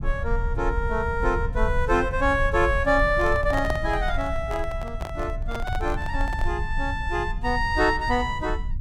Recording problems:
rumble; below 72 Hz, SNR 6 dB
microphone handling noise; from 3 to 6.5 s; peak -1 dB vs average level

